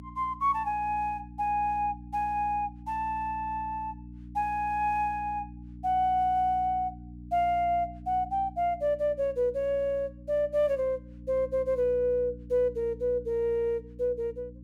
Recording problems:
electrical hum; 60 Hz, harmonics up to 300 Hz, SNR 16 dB

